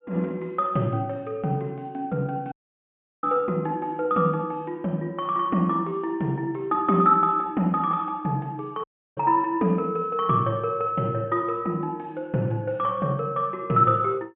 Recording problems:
treble missing; nothing above 3.3 kHz
audio cutting out; at 2.5 s for 0.5 s and at 9 s

